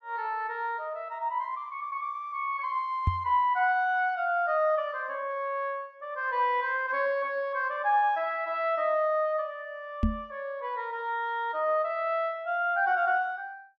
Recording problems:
microphone bump; at 3 s and at 10 s; peak +6 dB vs average level

